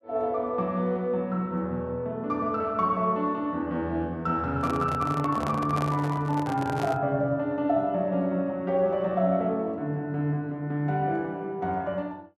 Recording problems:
microphone handling noise; from 4.5 to 7 s; peak -2 dB vs average level

